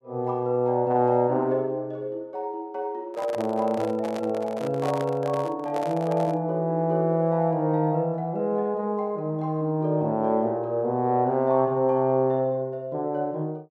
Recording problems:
handling noise; from 3 to 6.5 s; peak -4 dB vs average level

